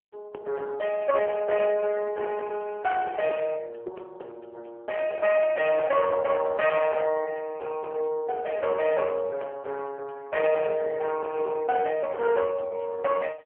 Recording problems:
telephone audio; 340 Hz to 2.2 kHz, AMR-NB
distortion; hard clipping, uneven, signal-to-distortion ratio 13 dB

